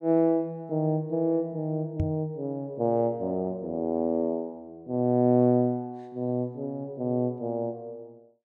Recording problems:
microphone bump; at 2 s; peak +2 dB vs average level

